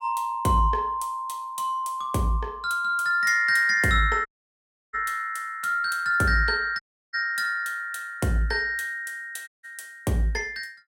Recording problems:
dropout; at 4.5 s for 0.5 s, at 7 s and at 9.5 s

